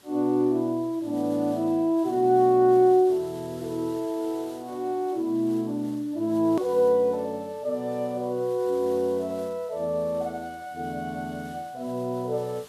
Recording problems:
background hiss; slope -2 dB per octave, SNR 25 dB
edit click; at 6.5 s

